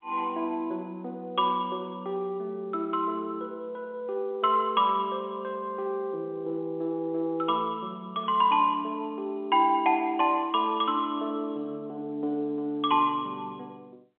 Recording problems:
telephone audio; 220 Hz to 3.6 kHz, G.711

